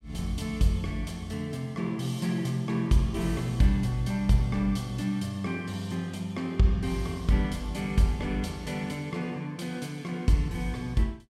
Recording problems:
none

